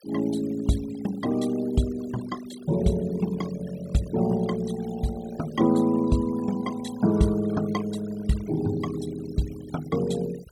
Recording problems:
noise reduction artefacts; signal-to-artefact ratio 18 dB

